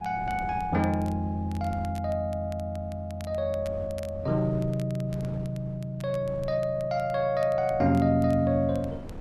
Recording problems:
wind noise; below 280 Hz, SNR 18 dB
crackling; vinyl, SNR 26 dB

